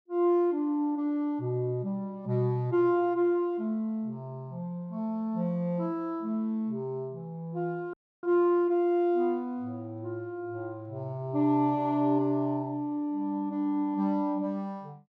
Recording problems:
dropout; at 8 s

